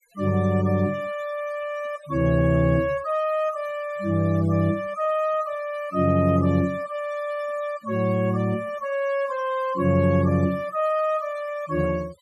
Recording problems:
noise reduction artefacts; signal-to-artefact ratio 22 dB

